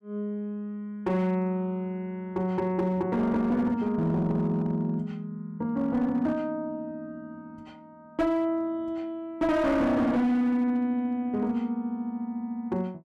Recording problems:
distorted audio; hard clipping, signal-to-distortion ratio 11 dB

